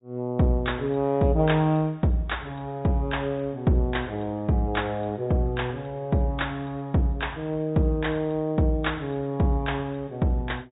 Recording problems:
treble missing; nothing above 3.8 kHz
codec artefacts; MP3, log-spectral distance 2 dB

